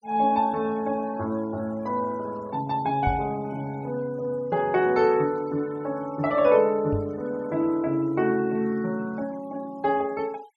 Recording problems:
denoising artefacts; signal-to-artefact ratio 25 dB
microphone bump; at 3 s and at 7 s; peak +1 dB vs average level

